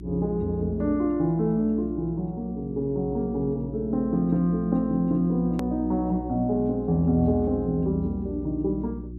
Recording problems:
hum; 60 Hz, harmonics up to 360 Hz, SNR 13 dB
hard cut with a click; at 5.5 s

